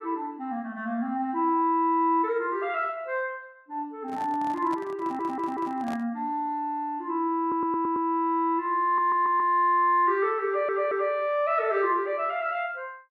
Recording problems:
microphone handling noise; from 4 to 6 s; peak -9 dB vs average level
stutter; 4 times, first at 5 s

